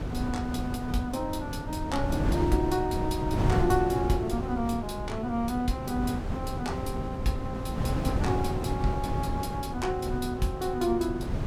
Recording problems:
wind noise; below 250 Hz, SNR 2 dB

